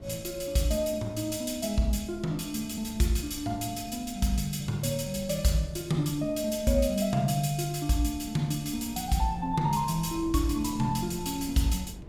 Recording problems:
wind noise; below 170 Hz, SNR 17 dB

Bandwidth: 17.5 kHz